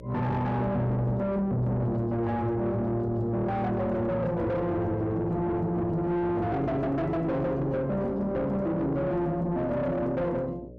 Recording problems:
distorted audio; soft clipping, signal-to-distortion ratio 7 dB
hum; 60 Hz, harmonics up to 600 Hz, SNR 17 dB

